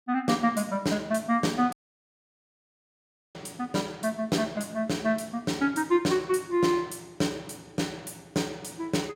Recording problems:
dropout; at 1.5 s for 1.5 s

